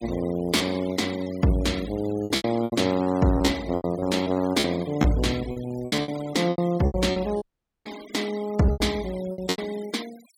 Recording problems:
denoising artefacts; signal-to-artefact ratio 18 dB
packet loss; 13% of the sound replaced, filled with repeated pitch periods
audio cutting out; at 7.5 s

